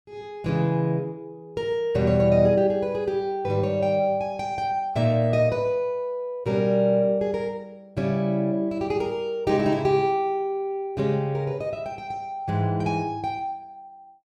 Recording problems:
none

